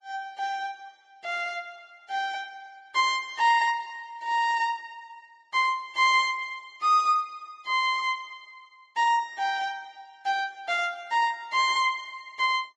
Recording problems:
codec artefacts; Vorbis, log-spectral distance 3 dB

